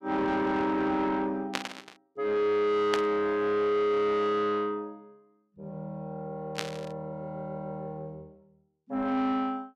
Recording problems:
distorted audio; soft clipping, signal-to-distortion ratio 11 dB
burst of static; at 1.5 s, at 3 s and at 6.5 s; peak +3 dB vs average level

